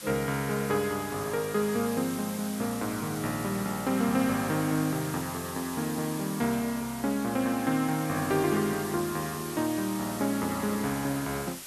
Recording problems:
hiss; slope 0 dB per octave, SNR 10 dB

